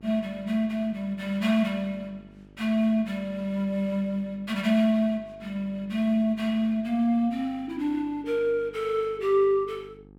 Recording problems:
hum; 50 Hz, harmonics up to 900 Hz, SNR 25 dB

